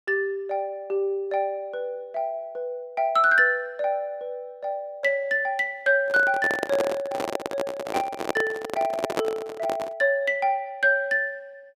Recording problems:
microphone handling noise; from 6 to 10 s; peak +4 dB vs average level

